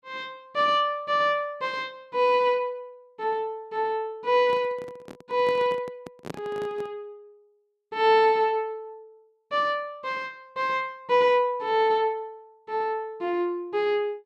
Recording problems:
microphone handling noise; from 4.5 to 7 s; peak -6 dB vs average level

